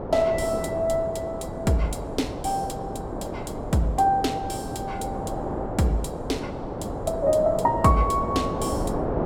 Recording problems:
wind noise; below 680 Hz, SNR 6 dB

